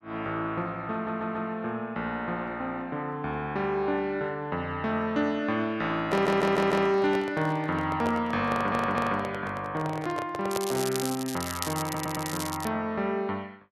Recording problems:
stutter; 4 times, first at 1 s
microphone handling noise; from 6 to 11 s; peak -1 dB vs average level
crackling; from 11 to 13 s; loose cable, SNR 7 dB

